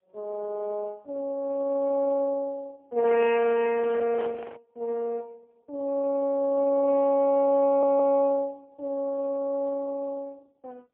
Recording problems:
phone line; 240 Hz to 2.2 kHz, AMR-NB, then MP3
handling noise; from 3 to 4.5 s; peak -10 dB vs average level
audio stuttering; at 7.5 s

